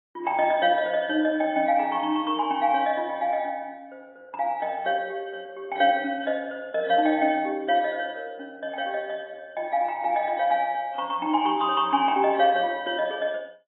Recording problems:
lossy compression; AAC, log-spectral distance 2 dB

